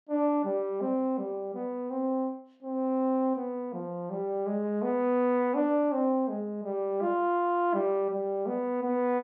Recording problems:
none

